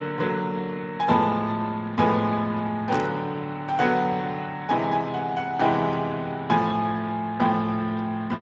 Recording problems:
codec artefacts; Speex, log-spectral distance 3 dB
burst of static; at 3 s; peak -12 dB vs average level

